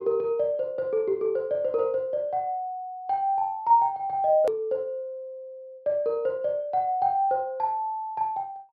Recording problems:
treble cut off; nothing above 5.5 kHz
edit click; at 4.5 s

